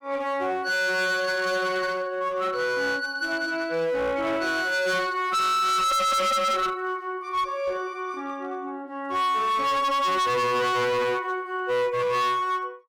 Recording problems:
distorted audio; hard clipping, uneven, signal-to-distortion ratio 6 dB

